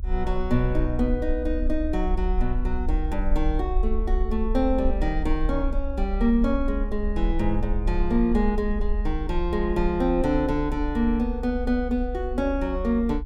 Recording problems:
rumble; below 54 Hz, SNR 4 dB

